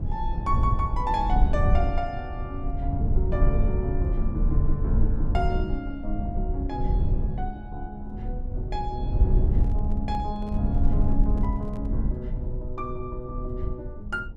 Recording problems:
rumble; below 78 Hz, SNR -5 dB
handling noise; from 9.5 to 12 s; peak -8 dB vs average level

